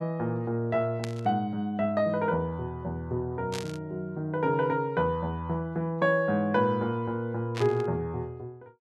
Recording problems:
static burst; at 1 s, at 3.5 s and at 7.5 s; peak -4 dB vs average level

